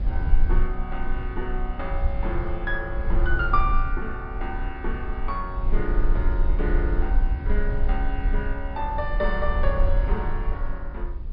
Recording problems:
treble cut off; nothing above 5.5 kHz
rumble; below 48 Hz, strongest tone 20 Hz, SNR -3 dB

